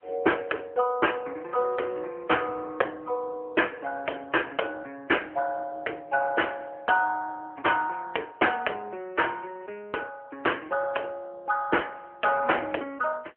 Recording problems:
phone line; 320 Hz to 3.2 kHz, AMR-NB

